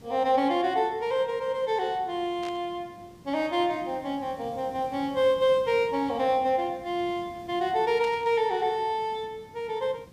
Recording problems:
hiss; SNR 23 dB
burst of static; at 2.5 s and at 8 s; peak -12 dB vs average level

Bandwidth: 15 kHz